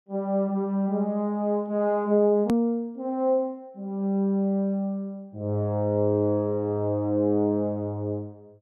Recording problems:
hard cut with a click; at 2.5 s

